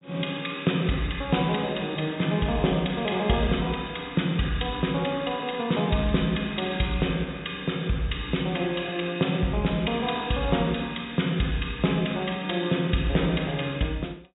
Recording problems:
treble cut off; nothing above 4 kHz
crackle; from 4.5 to 7 s and from 11 to 12 s; loose cable, SNR 28 dB

